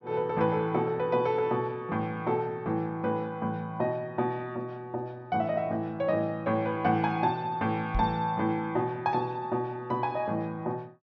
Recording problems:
low-pass filter; nothing above 6.2 kHz
microphone bump; at 8 s; peak +1 dB vs average level

